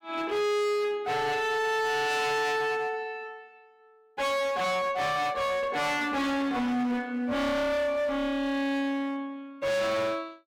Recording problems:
distortion; hard clipping, signal-to-distortion ratio 6 dB

